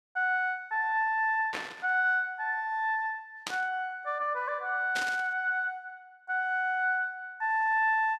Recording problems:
static burst; at 1.5 s, at 3.5 s and at 5 s; peak -1 dB vs average level

